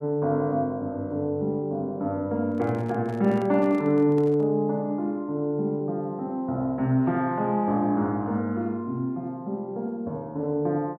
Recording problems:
handling noise; from 2.5 to 4.5 s; peak -11 dB vs average level

